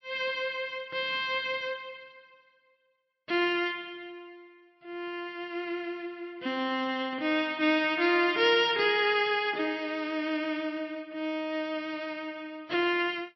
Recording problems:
lossy compression; MP3, log-spectral distance 2 dB, nothing above 5.2 kHz

